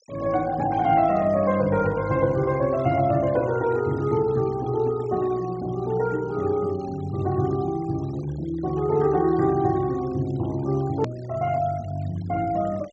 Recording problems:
treble cut off; nothing above 8 kHz
noise reduction artefacts; signal-to-artefact ratio 23 dB
hard cut with a click; at 11 s

